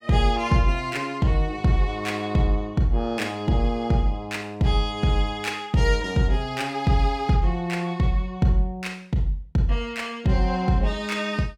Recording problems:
none

